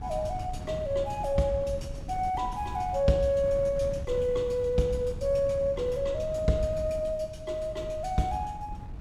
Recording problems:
wind noise; below 140 Hz, SNR 11 dB

